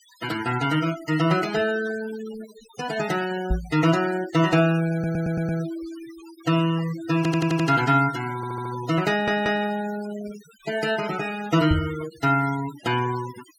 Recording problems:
noise reduction artefacts; signal-to-artefact ratio 15 dB
knock on the microphone; at 3.5 s and at 12 s; peak +4 dB vs average level
stutter; 4 times, first at 5 s

